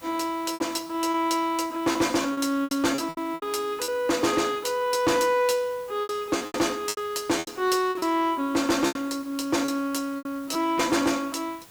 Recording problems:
distorted audio; hard clipping, signal-to-distortion ratio 10 dB
background hiss; slope -2 dB per octave, SNR 23 dB
packet loss; 10% of the sound replaced, filled with repeated pitch periods

